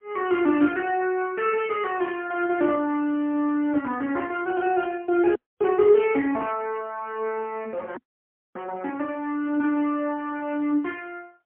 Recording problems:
telephone audio; 220 Hz to 3.3 kHz, AMR-NB, then MP3
dropout; at 5.5 s and at 8 s for 0.5 s

